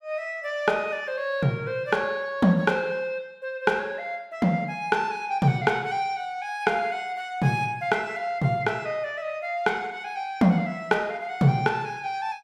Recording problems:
none

